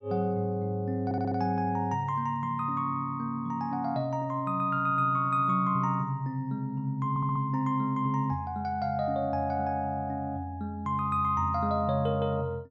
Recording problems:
audio stuttering; at 1 s and at 7 s

